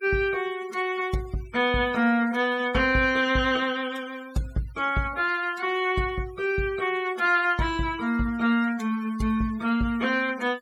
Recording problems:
noise reduction artefacts; signal-to-artefact ratio 21 dB

